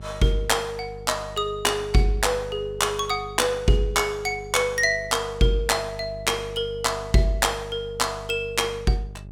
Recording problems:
hum; 50 Hz, harmonics up to 600 Hz, SNR 17 dB

